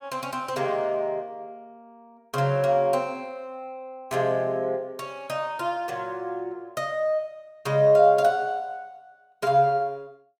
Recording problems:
none

